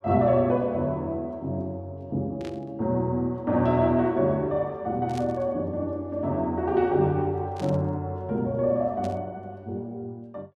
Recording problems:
static burst; 4 times, first at 2.5 s; peak -12 dB vs average level

